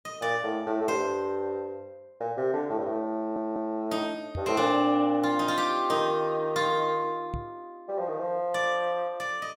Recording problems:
audio stuttering; at 3 s
microphone bump; at 4.5 s and at 7.5 s; peak -4 dB vs average level

